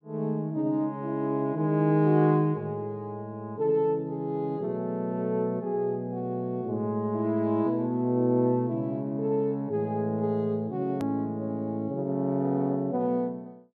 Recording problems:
edit click; at 11 s

